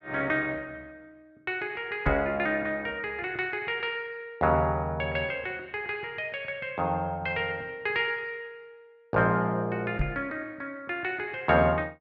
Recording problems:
microphone bump; at 2 s and at 10 s; peak +3 dB vs average level

